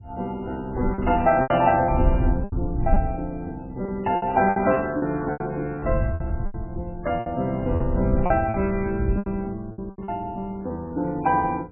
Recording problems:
lossy compression; MP3, log-spectral distance 2 dB, nothing above 2.7 kHz
wind noise; below 92 Hz, SNR 5 dB
packet loss; 10% of the sound replaced, filled with repeated pitch periods

